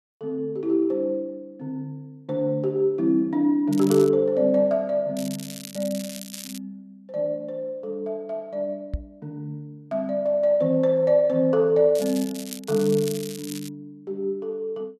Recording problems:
crackling; at 3.5 s, from 5 to 6.5 s and from 12 to 14 s; loose cable, SNR 14 dB
microphone thump; at 9 s; peak -2 dB vs average level

